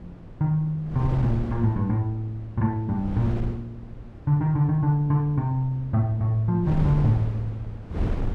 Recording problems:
wind noise; below 210 Hz, SNR 10 dB

